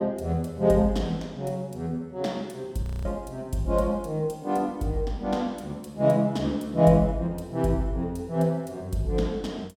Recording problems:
frozen audio; at 3 s

